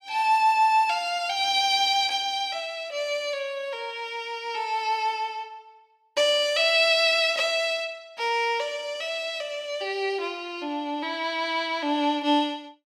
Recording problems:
none

